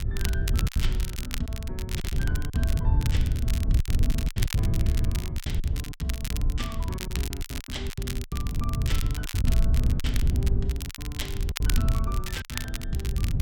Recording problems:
hum; 50 Hz, harmonics up to 800 Hz, SNR 21 dB
wind on the microphone; below 96 Hz, SNR -8 dB
crackling; vinyl, SNR 2 dB
lost packets; 12% of the sound replaced, filled with silence

